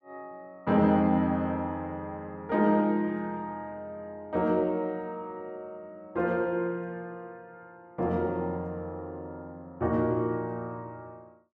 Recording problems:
none

